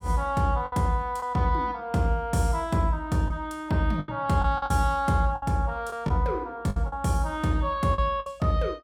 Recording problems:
lost packets; 7% of the sound replaced, filled with the last packet

